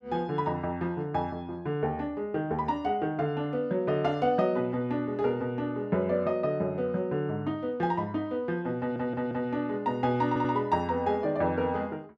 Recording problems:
stutter; at 9 s and at 10 s

